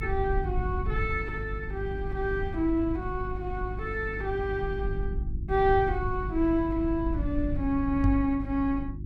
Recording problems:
mains hum; 50 Hz, harmonics up to 350 Hz, SNR 9 dB
low-frequency rumble; below 84 Hz, SNR 8 dB
microphone thump; at 8 s; peak +6 dB vs average level

